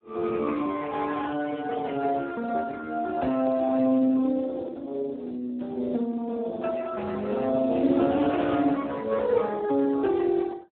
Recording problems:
telephone audio; 220 Hz to 2.1 kHz, Speex

